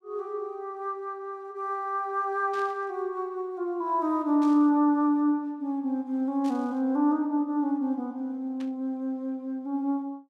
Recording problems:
static burst; 4 times, first at 2.5 s; peak -15 dB vs average level

